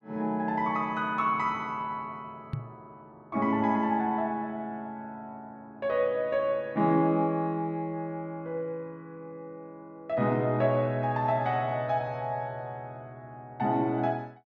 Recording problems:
knock on the microphone; at 2.5 s; peak 0 dB vs average level

